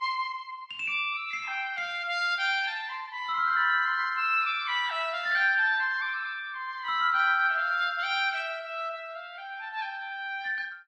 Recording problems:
codec artefacts; Vorbis, log-spectral distance 2 dB

